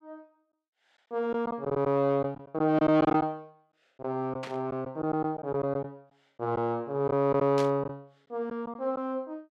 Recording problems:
lost packets; 6% of the sound replaced, filled with silence
static burst; at 4.5 s and at 7.5 s; peak -6 dB vs average level

